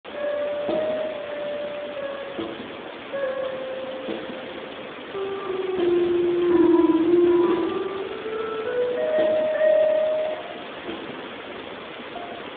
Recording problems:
phone line; 170 Hz to 3.6 kHz, Speex
background hiss; SNR 12 dB

